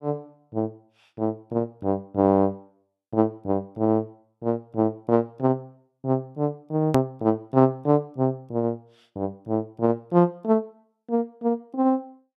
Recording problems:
edit click; at 7 s

